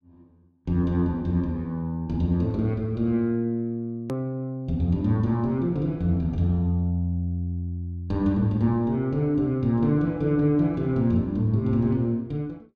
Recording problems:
hard cut with a click; at 4 s

